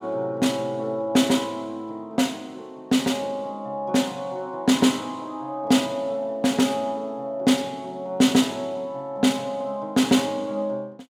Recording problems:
none

